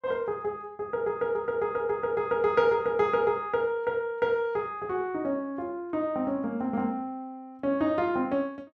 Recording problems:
none

